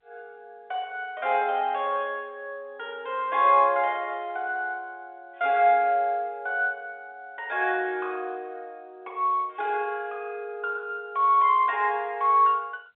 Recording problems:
phone line; 280 Hz to 3.7 kHz, G.711

